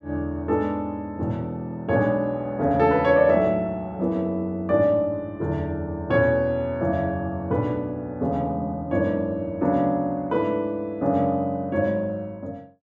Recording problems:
none

